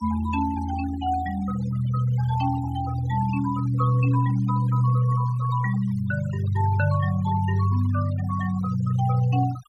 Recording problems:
denoising artefacts; signal-to-artefact ratio 17 dB

